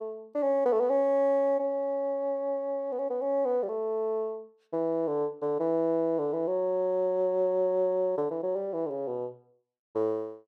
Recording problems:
none

